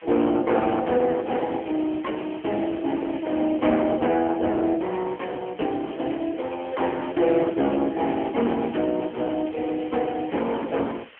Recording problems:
phone line; 240 Hz to 3.5 kHz, AMR-NB
distorted audio; hard clipping, signal-to-distortion ratio 13 dB
hiss; SNR 23 dB

